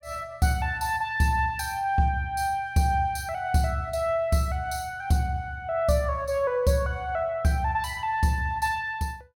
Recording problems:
none

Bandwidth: 17.5 kHz